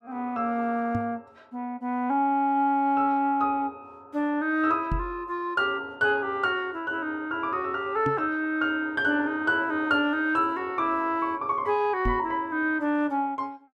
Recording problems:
microphone bump; 4 times, first at 1 s; peak 0 dB vs average level

